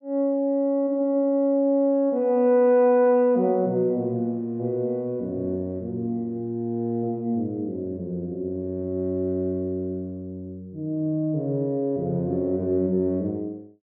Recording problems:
none

